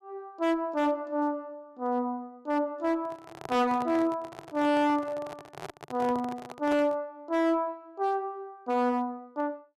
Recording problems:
distorted audio; hard clipping, signal-to-distortion ratio 11 dB
handling noise; from 3 to 7 s; peak -5 dB vs average level

